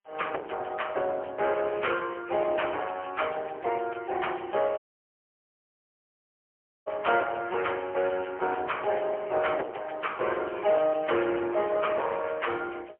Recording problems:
phone line; 300 Hz to 3.2 kHz, AMR-NB, then MP3
distorted audio; soft clipping, signal-to-distortion ratio 10 dB
audio cutting out; at 5 s for 2 s

